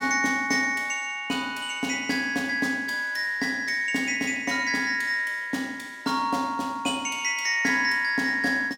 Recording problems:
none

